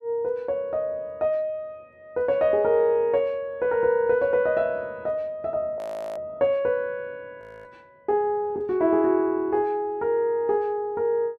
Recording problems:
frozen audio; at 6 s and at 7.5 s

